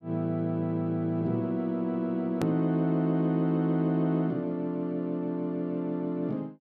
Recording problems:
click at an edit; at 2.5 s

